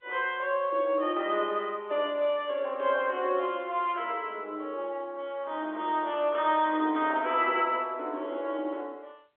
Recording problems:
telephone audio; 340 Hz to 3.8 kHz, G.711

